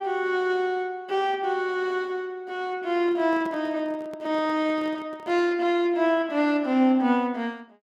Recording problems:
handling noise; from 3 to 5.5 s; peak -11 dB vs average level

